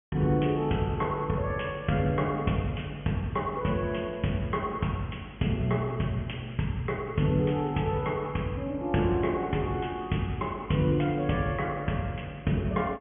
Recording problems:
treble missing; nothing above 3.3 kHz

